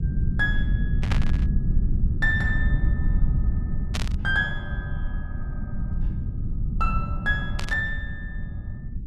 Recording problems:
rumble; below 110 Hz, SNR 0 dB
burst of static; at 1 s, at 4 s and at 7.5 s; peak +2 dB vs average level

